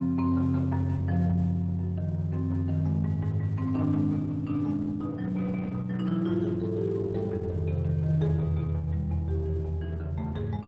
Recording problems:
lossy compression; Opus, log-spectral distance 2 dB, nothing above 7.8 kHz

